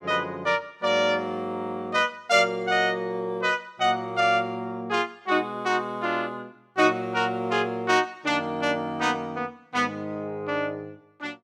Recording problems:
none

